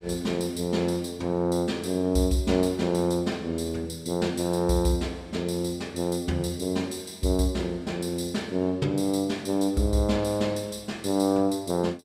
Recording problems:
none

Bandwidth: 15.5 kHz